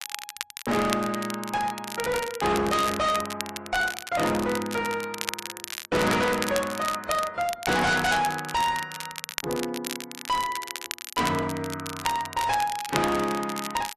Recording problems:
codec artefacts; AAC, then MP3, log-spectral distance 2 dB, nothing above 11 kHz
distorted audio; hard clipping, uneven, signal-to-distortion ratio 6 dB
crackling; vinyl, SNR 9 dB

